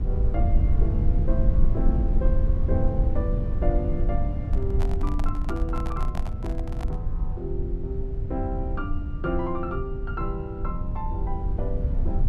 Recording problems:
rumble; below 74 Hz, SNR -6 dB
microphone handling noise; from 4.5 to 7 s; peak +2 dB vs average level

